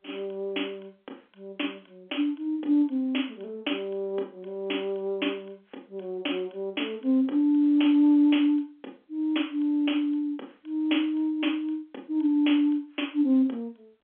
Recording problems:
telephone audio; 220 Hz to 3.4 kHz, G.711

